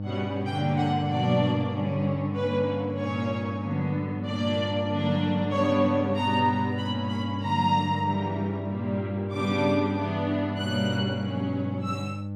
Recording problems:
hum; 50 Hz, harmonics up to 600 Hz, SNR 6 dB

